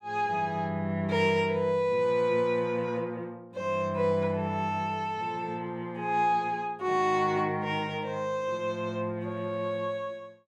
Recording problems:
none

